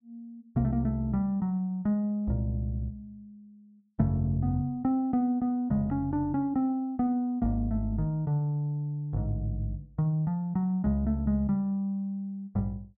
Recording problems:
none

